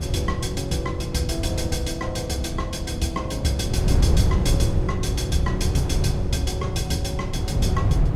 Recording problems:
wind on the microphone; below 140 Hz, SNR -2 dB

